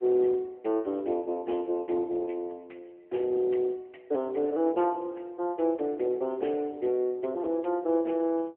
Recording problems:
telephone audio; 260 Hz to 3.4 kHz, AMR-NB

